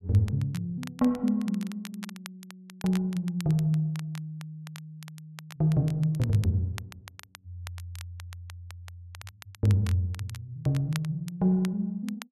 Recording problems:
crackling; vinyl, SNR 20 dB

